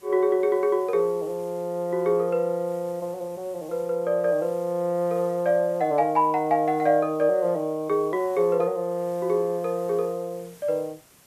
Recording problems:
hiss; slope -2 dB per octave, SNR 27 dB

